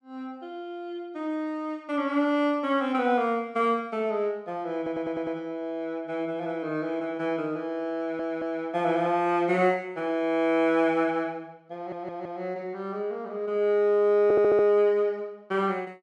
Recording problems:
audio stuttering; 4 times, first at 5 s

